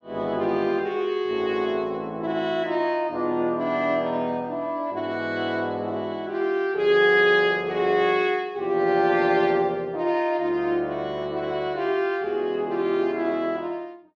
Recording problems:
none

